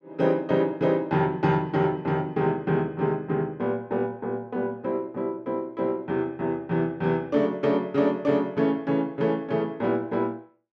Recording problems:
none

